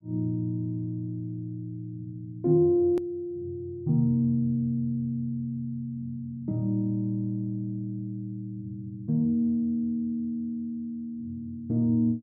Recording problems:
edit click; at 3 s

